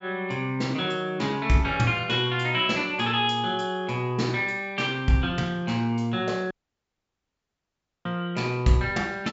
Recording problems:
treble missing; nothing above 8 kHz
dropout; at 6.5 s for 1.5 s

